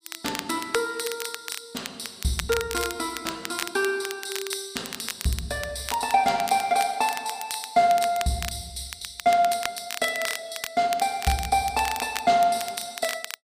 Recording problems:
crackle; vinyl, SNR 9 dB

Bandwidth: 15 kHz